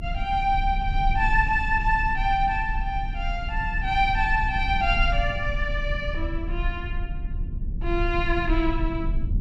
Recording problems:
low-frequency rumble; below 56 Hz, strongest tone 32 Hz, SNR 5 dB

